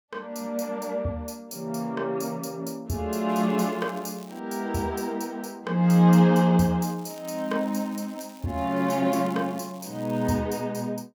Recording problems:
crackle; from 3.5 to 4.5 s and from 7 to 10 s; loose cable, SNR 25 dB

